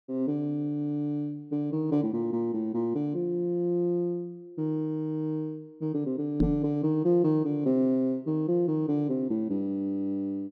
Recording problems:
microphone bump; at 6.5 s; peak +7 dB vs average level

